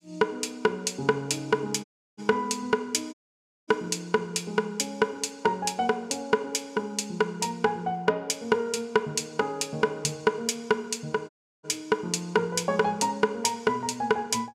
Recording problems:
audio cutting out; at 2 s, at 3 s for 0.5 s and at 11 s

